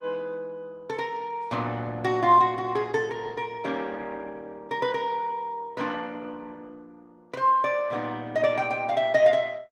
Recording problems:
lossy compression; Opus, log-spectral distance 3 dB

